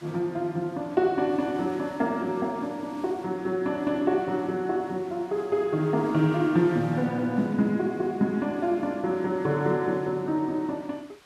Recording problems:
hiss; SNR 25 dB

